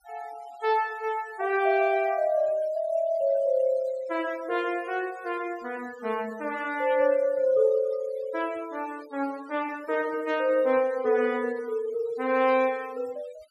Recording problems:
denoising artefacts; signal-to-artefact ratio 23 dB

